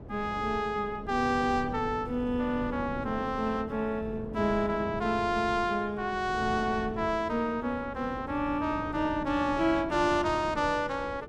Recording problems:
wind noise; below 350 Hz, SNR 12 dB

